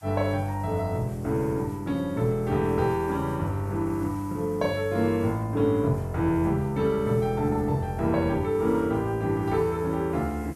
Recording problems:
background hiss; SNR 27 dB

